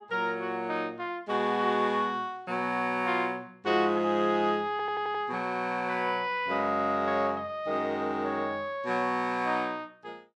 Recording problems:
stutter; at 4.5 s

